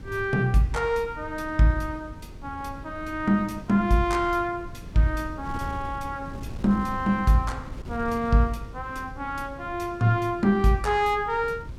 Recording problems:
wind on the microphone; below 170 Hz, SNR 15 dB

